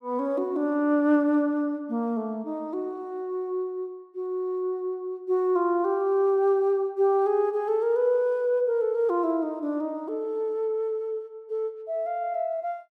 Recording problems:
none

